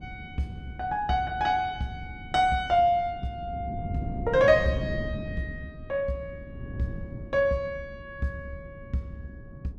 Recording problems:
wind on the microphone; below 210 Hz, SNR 11 dB

